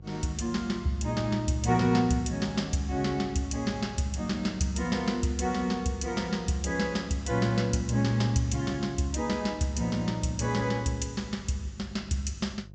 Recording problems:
treble missing; nothing above 8 kHz
hum; 50 Hz, harmonics up to 550 Hz, SNR 20 dB

